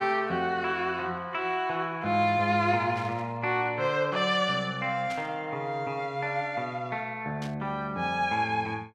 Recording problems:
static burst; at 3 s, at 5 s and at 7.5 s; peak -9 dB vs average level

